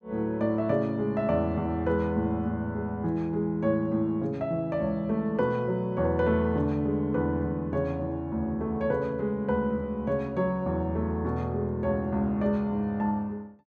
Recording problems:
none

